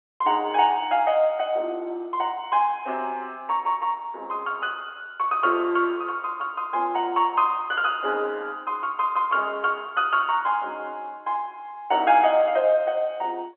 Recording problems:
phone line; 300 Hz to 3.3 kHz, G.711

